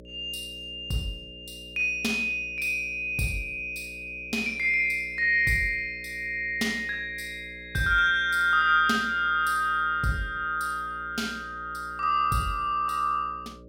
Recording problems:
hum; 60 Hz, harmonics up to 600 Hz, SNR 22 dB

